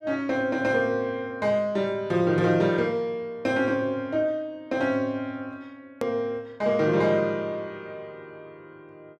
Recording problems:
click at an edit; at 6 s

